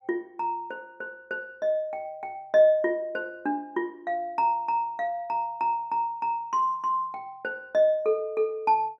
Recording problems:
none

